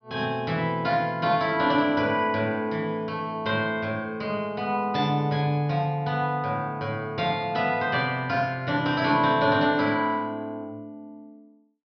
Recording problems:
treble cut off; nothing above 5.5 kHz

